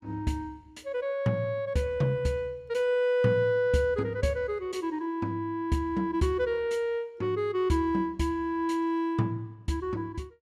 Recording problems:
none

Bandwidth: 14.5 kHz